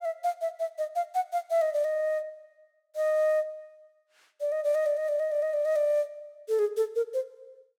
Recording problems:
none

